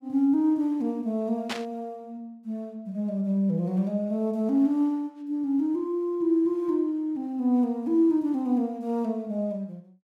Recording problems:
burst of static; at 1.5 s; peak -2 dB vs average level

